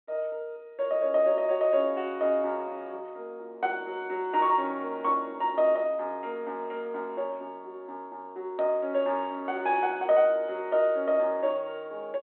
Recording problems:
telephone audio; 240 Hz to 3.4 kHz, G.726

